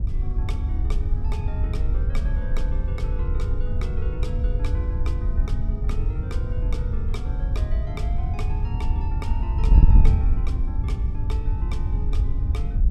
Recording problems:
wind noise; below 74 Hz, SNR -14 dB

